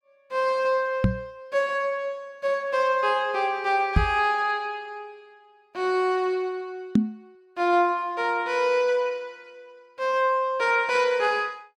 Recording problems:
knock on the microphone; at 1 s, at 4 s and at 7 s; peak +8 dB vs average level

